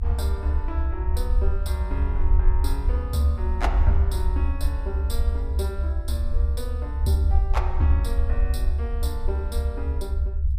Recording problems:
rumble; below 70 Hz, SNR -6 dB

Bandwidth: 15 kHz